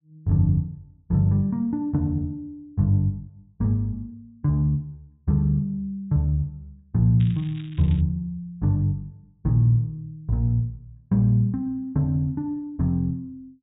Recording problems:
treble cut off; nothing above 4 kHz
crackling; at 7 s; loose cable, SNR 25 dB

